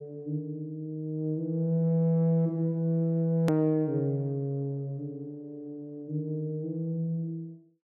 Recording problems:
hard cut with a click; at 3.5 s

